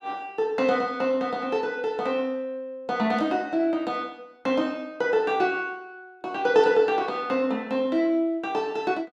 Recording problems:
none

